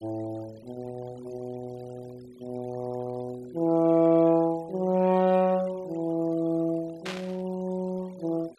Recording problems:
denoising artefacts; signal-to-artefact ratio 25 dB
static burst; at 7 s; peak -5 dB vs average level

